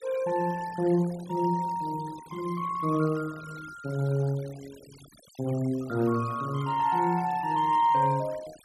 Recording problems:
denoising artefacts; signal-to-artefact ratio 21 dB

